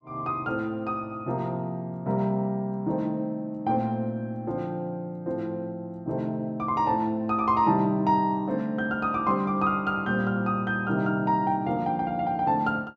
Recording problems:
none

